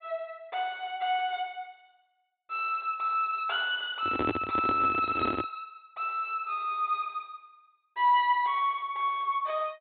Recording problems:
treble cut off; nothing above 4 kHz
handling noise; from 4 to 5.5 s; peak +2 dB vs average level

